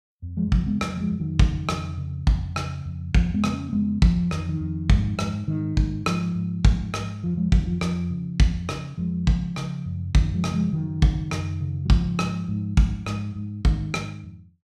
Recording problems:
none

